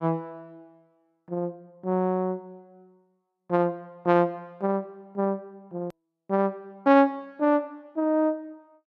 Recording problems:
edit click; at 6 s

